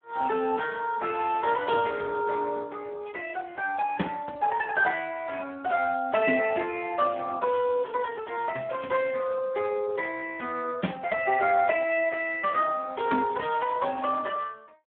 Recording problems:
telephone audio; 190 Hz to 3.3 kHz, Speex

